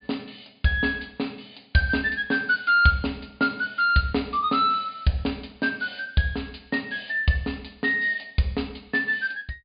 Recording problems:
treble cut off; nothing above 4.9 kHz

